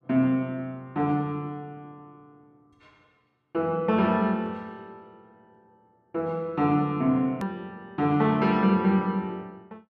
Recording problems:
click at an edit; at 7.5 s

